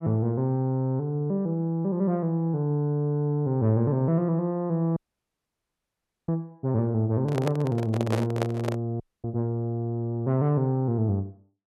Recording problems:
audio cutting out; at 5 s for 1.5 s and at 9 s
handling noise; from 7 to 9 s; peak +1 dB vs average level

